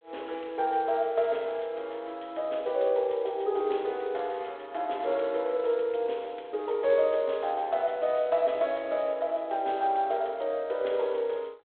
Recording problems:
telephone audio; 340 Hz to 3.9 kHz, G.726

